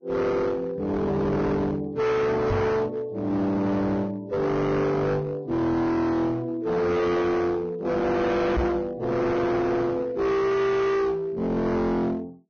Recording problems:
lossy codec; Vorbis, log-spectral distance 2 dB, nothing above 6.5 kHz
distorted audio; hard clipping, uneven, signal-to-distortion ratio 5 dB
microphone thump; at 2.5 s and at 8.5 s; peak +4 dB vs average level

